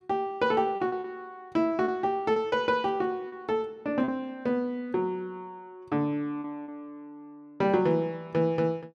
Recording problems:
lost packets; 5% of the sound replaced, filled with repeated pitch periods

